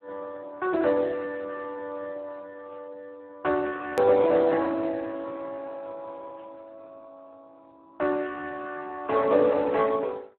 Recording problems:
telephone audio; 300 Hz to 2 kHz, Speex
hard cut with a click; at 4 s

